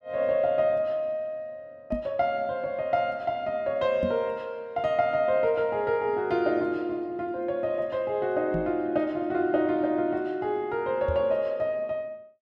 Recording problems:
microphone bump; 4 times, first at 2 s; peak 0 dB vs average level

